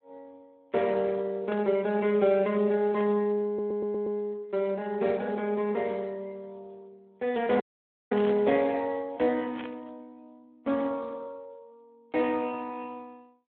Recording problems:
telephone audio; 260 Hz to 3.5 kHz, Speex
static burst; 4 times, first at 1.5 s; peak -7 dB vs average level
stutter; at 3.5 s
dropout; at 7.5 s for 0.5 s

